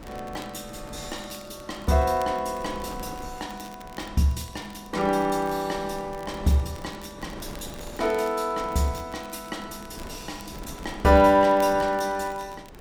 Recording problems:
wind on the microphone; below 530 Hz, SNR 18 dB
crackle; vinyl, SNR 25 dB

